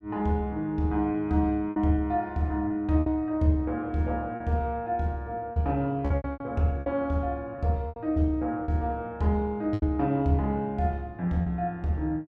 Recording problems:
lost packets; 7% of the sound replaced, filled with repeated pitch periods

